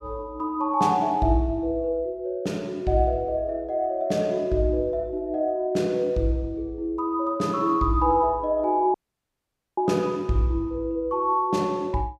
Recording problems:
dropout; at 9 s for 1 s

